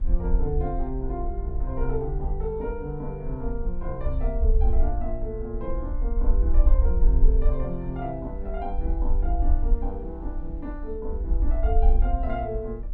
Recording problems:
rumble; below 48 Hz, SNR -5 dB
wind noise; below 210 Hz, SNR 16 dB

